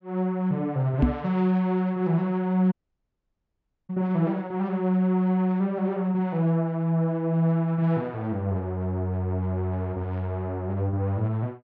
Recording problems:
treble cut off; nothing above 7.6 kHz
knock on the microphone; at 1 s; peak +7 dB vs average level
audio cutting out; at 2.5 s for 1 s

